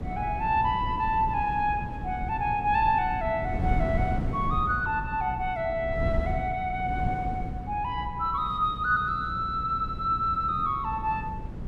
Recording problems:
electrical hum; 60 Hz, harmonics up to 540 Hz, SNR 16 dB
wind noise; below 180 Hz, SNR 8 dB

